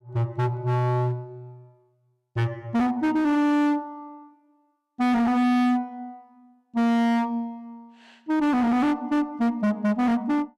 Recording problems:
distorted audio; hard clipping, signal-to-distortion ratio 7 dB

